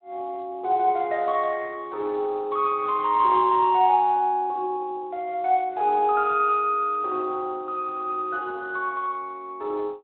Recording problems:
phone line; 320 Hz to 3.3 kHz, Speex

